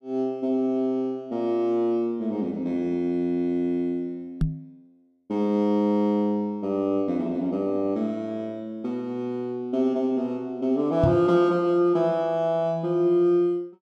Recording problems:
microphone bump; at 4.5 s and at 11 s; peak +5 dB vs average level

